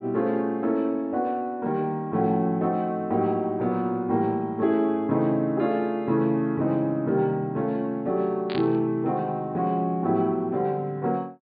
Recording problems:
treble cut off; nothing above 4.7 kHz
static burst; at 8.5 s; peak -7 dB vs average level

